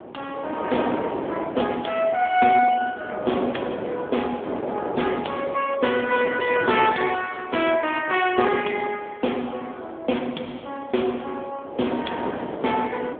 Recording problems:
phone line; 190 Hz to 3.4 kHz, AMR-NB
wind noise; below 710 Hz, SNR 9 dB

